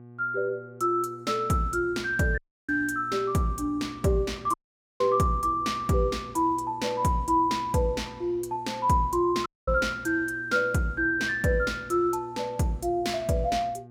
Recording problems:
hum; 60 Hz, harmonics up to 1.1 kHz, SNR 21 dB
audio cutting out; at 2.5 s, at 4.5 s and at 9.5 s

